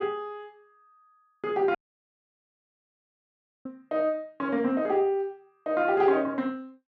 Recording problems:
dropout; at 2 s for 2 s

